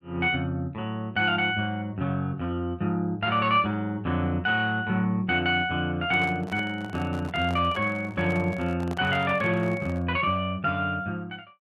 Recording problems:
microphone handling noise; from 6 to 10 s; peak -9 dB vs average level

